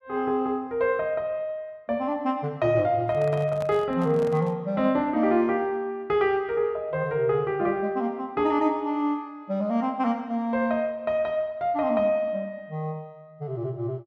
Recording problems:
microphone handling noise; from 3 to 4.5 s; peak -7 dB vs average level

